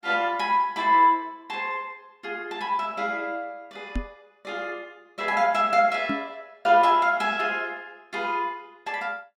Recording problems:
microphone bump; at 4 s and at 6 s; peak -1 dB vs average level

